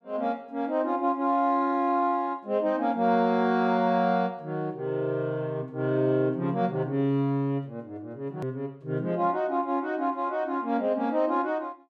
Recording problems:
hard cut with a click; at 8.5 s

